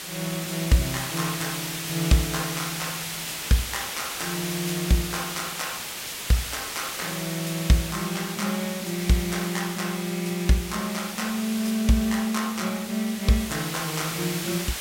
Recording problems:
background hiss; slope 0 dB per octave, SNR 5 dB

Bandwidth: 16 kHz